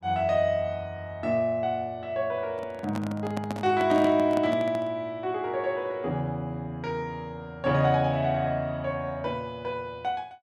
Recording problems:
handling noise; from 2.5 to 5 s; peak -3 dB vs average level

